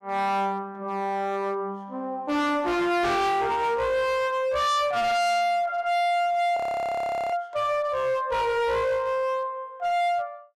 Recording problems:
distortion; hard clipping, signal-to-distortion ratio 7 dB
audio freezing; at 6.5 s for 1 s

